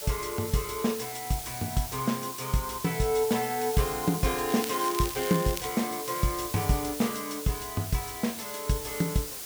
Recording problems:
hiss; slope 0 dB per octave, SNR 7 dB
crackling; from 4.5 to 5.5 s; loose cable, SNR 9 dB

